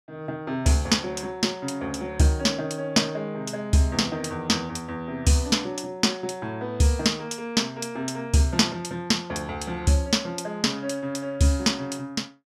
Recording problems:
none

